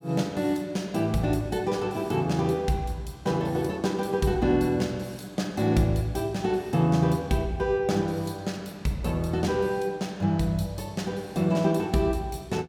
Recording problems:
none

